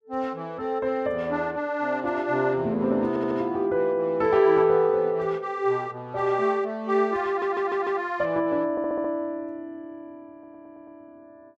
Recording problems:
stutter; 4 times, first at 3 s

